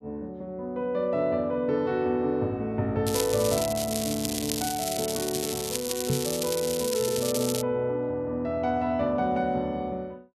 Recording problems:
crackling; from 3 to 7.5 s; loose cable, SNR 4 dB
microphone thump; at 6 s; peak +3 dB vs average level

